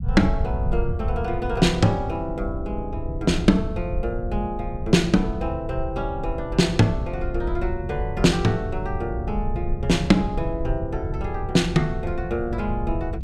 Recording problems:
low-frequency rumble; below 90 Hz, SNR 6 dB

